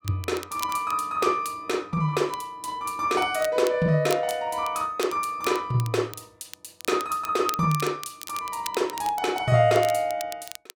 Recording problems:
crackling; vinyl, SNR 15 dB

